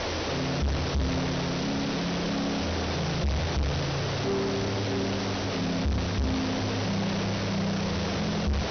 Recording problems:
treble missing; nothing above 6.1 kHz
distorted audio; soft clipping, signal-to-distortion ratio 6 dB
background hiss; slope -4 dB per octave, SNR 1 dB
crackling; from 1.5 to 3.5 s, at 5 s and at 5.5 s; loose cable, SNR 18 dB

